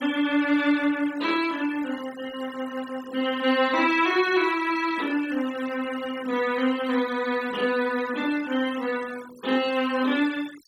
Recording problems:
noise reduction artefacts; signal-to-artefact ratio 17 dB

